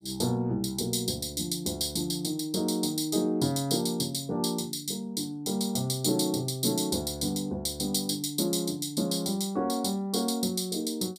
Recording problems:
none

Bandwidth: 15.5 kHz